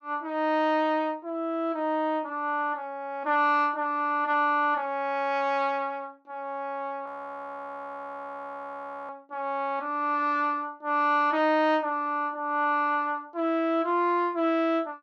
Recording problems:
frozen audio; at 7 s for 2 s

